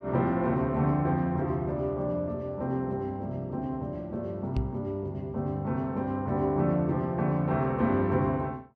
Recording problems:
microphone bump; at 4.5 s; peak +2 dB vs average level

